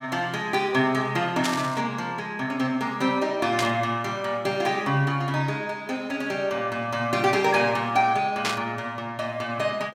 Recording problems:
burst of static; at 1.5 s, at 3.5 s and at 8.5 s; peak +3 dB vs average level

